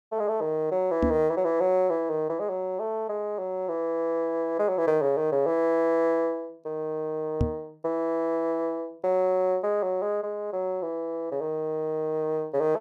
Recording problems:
knock on the microphone; at 1 s and at 7.5 s; peak +5 dB vs average level

